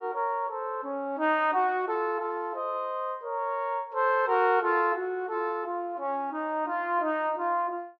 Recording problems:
none

